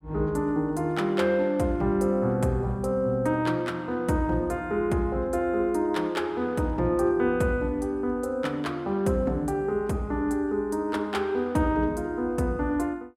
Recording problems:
none

